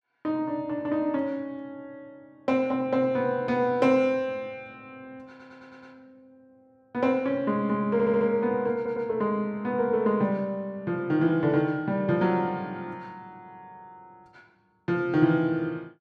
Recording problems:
audio stuttering; at 5.5 s, at 8 s and at 9 s

